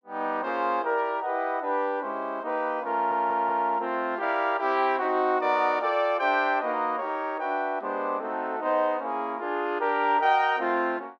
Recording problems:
stutter; at 3 s

